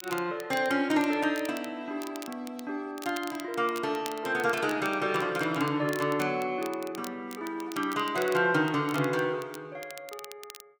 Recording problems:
crackle; vinyl, SNR 17 dB

